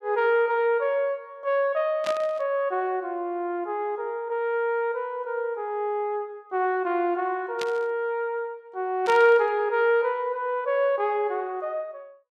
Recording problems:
static burst; at 2 s, at 7.5 s and at 9 s; peak -4 dB vs average level

